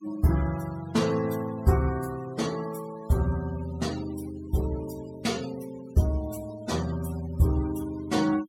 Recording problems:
denoising artefacts; signal-to-artefact ratio 17 dB

